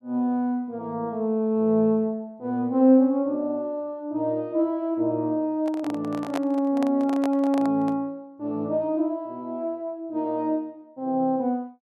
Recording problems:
handling noise; from 5.5 to 8 s; peak -2 dB vs average level

